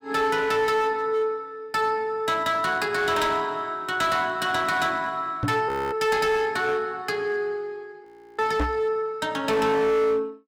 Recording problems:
distorted audio; hard clipping, signal-to-distortion ratio 10 dB
microphone thump; at 5.5 s and at 8.5 s; peak +2 dB vs average level
frozen audio; at 5.5 s and at 8 s

